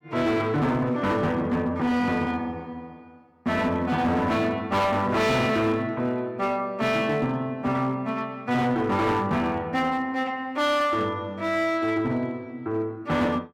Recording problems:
distorted audio; hard clipping, uneven, signal-to-distortion ratio 10 dB

